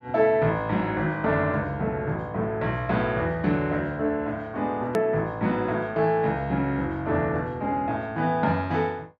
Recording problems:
click at an edit; at 5 s

